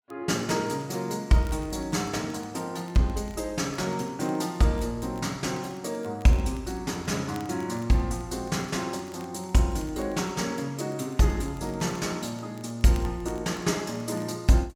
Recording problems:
crackling; vinyl, SNR 27 dB

